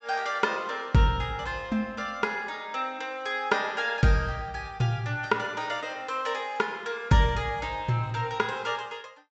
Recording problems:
treble cut off; nothing above 8 kHz

